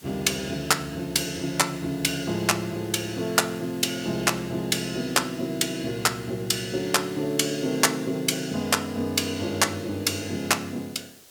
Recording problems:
hiss; SNR 22 dB

